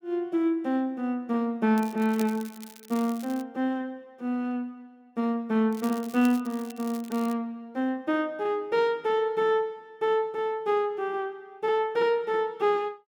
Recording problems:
crackle; from 2 to 3.5 s and from 5.5 to 7.5 s; loose cable, SNR 19 dB

